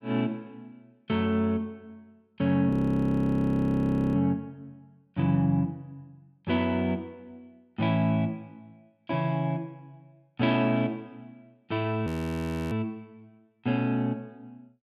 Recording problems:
audio freezing; at 2.5 s for 1.5 s and at 12 s for 0.5 s

